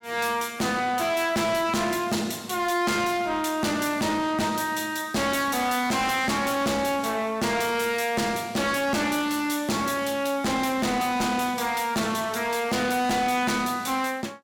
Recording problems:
distortion; soft clipping, signal-to-distortion ratio 7 dB

